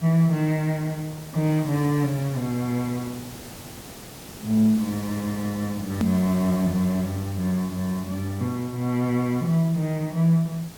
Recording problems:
background hiss; slope -4 dB per octave, SNR 16 dB
click at an edit; at 6 s

